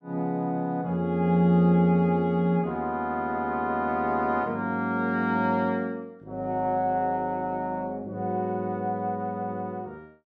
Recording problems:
none

